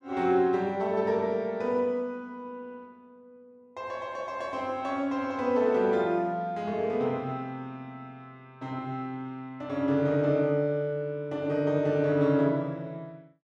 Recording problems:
none

